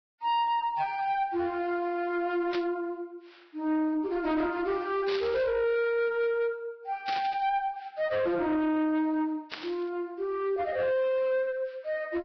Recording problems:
lossy compression; Vorbis, log-spectral distance 2 dB
distorted audio; soft clipping, signal-to-distortion ratio 10 dB
static burst; 4 times, first at 2.5 s; peak -3 dB vs average level

